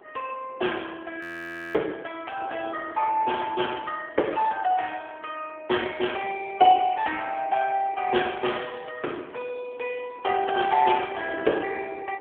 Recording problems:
phone line; 260 Hz to 3.4 kHz, AMR-NB
wind noise; below 800 Hz, SNR 20 dB
frozen audio; at 1 s for 0.5 s

